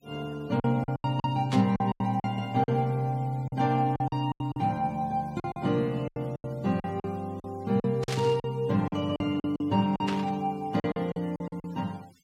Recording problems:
denoising artefacts; signal-to-artefact ratio 27 dB
packet loss; 13% of the sound replaced, filled with silence
burst of static; at 1.5 s, at 8 s and at 10 s; peak -2 dB vs average level

